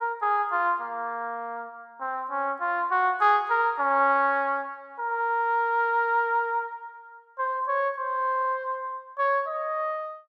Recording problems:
none

